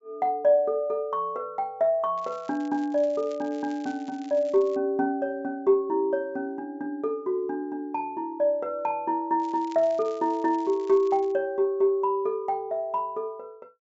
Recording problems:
low-pass filter; nothing above 8 kHz
crackling; from 2 to 5 s and from 9.5 to 11 s; loose cable, SNR 27 dB

